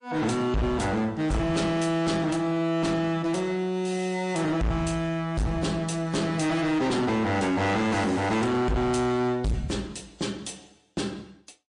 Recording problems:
lossy compression; MP3, log-spectral distance 3 dB, nothing above 9.5 kHz
distorted audio; hard clipping, signal-to-distortion ratio 7 dB

